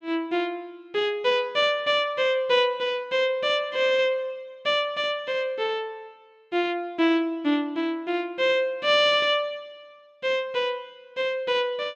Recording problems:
none

